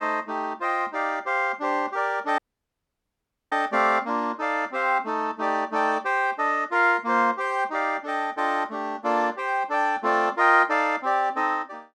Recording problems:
audio cutting out; at 2.5 s for 1 s

